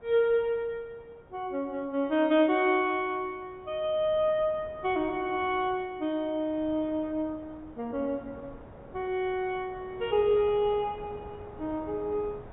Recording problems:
treble cut off; nothing above 4 kHz
wind on the microphone; below 690 Hz, SNR 21 dB

